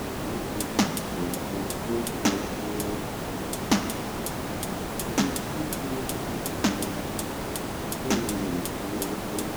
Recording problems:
hiss; slope -6 dB per octave, SNR 1 dB

